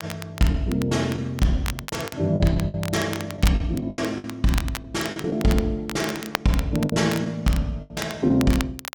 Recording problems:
crackling; vinyl, SNR 12 dB
packet loss; 9% of the sound replaced, filled with the last packet

